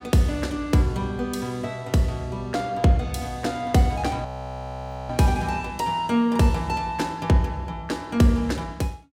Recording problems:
audio freezing; at 4.5 s for 1 s

